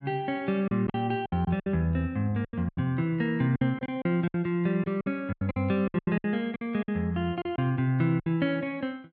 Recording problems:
packet loss; 13% of the sound replaced, filled with silence

